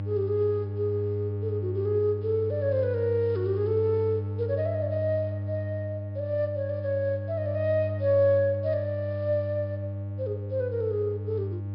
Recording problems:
low-pass filter; nothing above 5.5 kHz
electrical hum; 50 Hz, harmonics up to 600 Hz, SNR 5 dB

